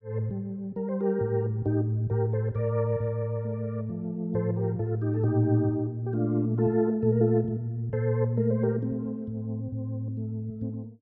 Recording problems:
none

